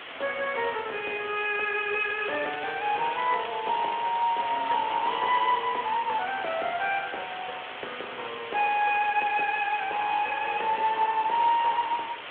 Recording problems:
phone line; 340 Hz to 3.7 kHz, Speex
background hiss; SNR 11 dB
crackle; from 2 to 5.5 s; loose cable, SNR 17 dB

